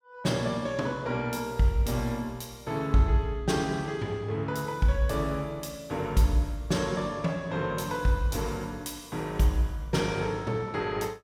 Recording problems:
none

